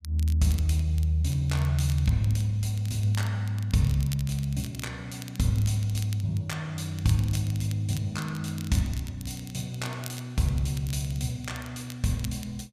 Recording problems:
crackle; vinyl, SNR 18 dB

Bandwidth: 14.5 kHz